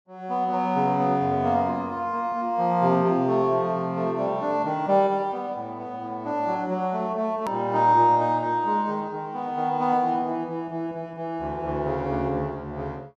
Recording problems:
hard cut with a click; at 7.5 s

